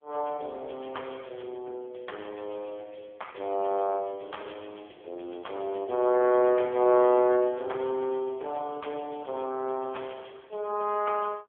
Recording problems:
telephone audio; 300 Hz to 3.4 kHz, AMR-NB

